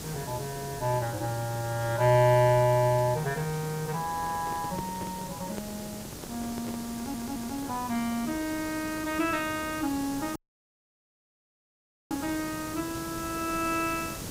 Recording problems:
background hiss; SNR 10 dB
microphone handling noise; from 4 to 8 s; peak -5 dB vs average level
stutter; at 7 s
dropout; at 10 s for 2 s

